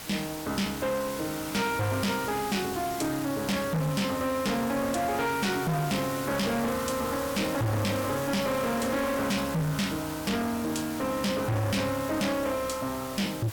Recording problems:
distorted audio; soft clipping, signal-to-distortion ratio 6 dB
background hiss; slope -1 dB per octave, SNR 10 dB

